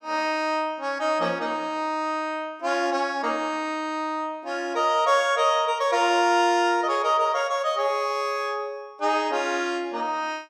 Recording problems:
none

